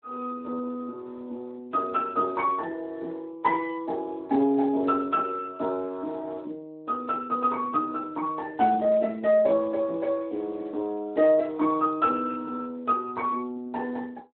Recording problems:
phone line; 240 Hz to 2.6 kHz, Speex

